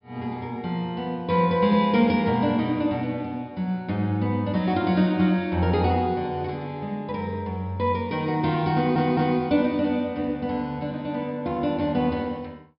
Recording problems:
low-pass filter; nothing above 5.5 kHz
stutter; at 9 s

